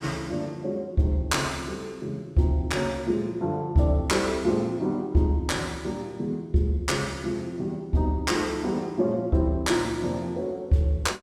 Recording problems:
none

